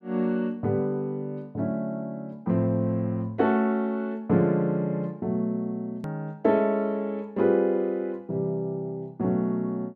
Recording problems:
edit click; at 6 s

